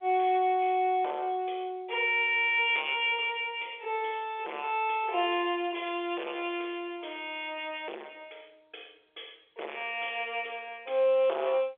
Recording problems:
telephone audio; 340 Hz to 3.7 kHz, G.711
distortion; soft clipping, signal-to-distortion ratio 9 dB

